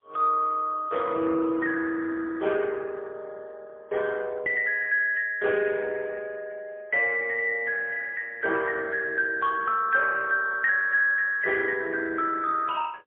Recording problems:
phone line; 340 Hz to 2.6 kHz, AMR-NB, then MP3

